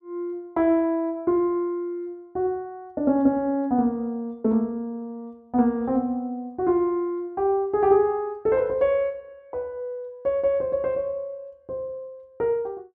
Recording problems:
none

